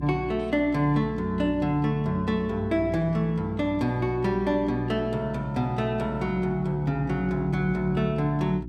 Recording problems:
hum; 60 Hz, harmonics up to 360 Hz, SNR 12 dB

